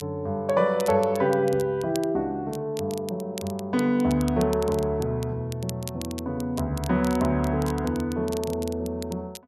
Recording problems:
crackle; vinyl, SNR 17 dB

